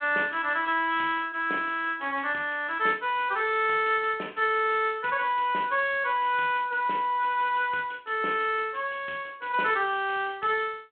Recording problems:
phone line; 240 Hz to 3.4 kHz, G.726

